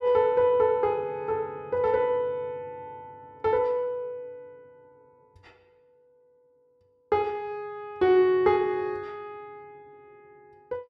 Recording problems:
none

